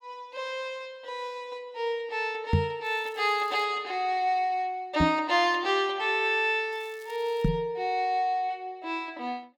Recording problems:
knock on the microphone; at 2.5 s, at 5 s and at 7.5 s; peak +8 dB vs average level
crackle; at 3 s and at 6.5 s; loose cable, SNR 27 dB

